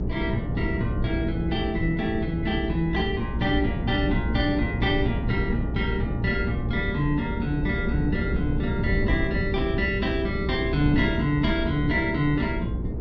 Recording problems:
hum; 60 Hz, harmonics up to 480 Hz, SNR 7 dB
wind on the microphone; below 220 Hz, SNR 4 dB

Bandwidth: 7 kHz